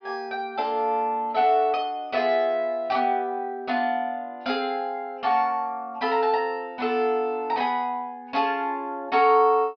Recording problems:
treble cut off; nothing above 5.5 kHz

